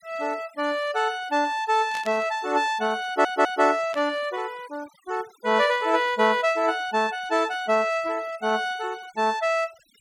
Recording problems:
denoising artefacts; signal-to-artefact ratio 24 dB
burst of static; at 2 s and at 4 s; peak -9 dB vs average level
audio stuttering; at 3 s

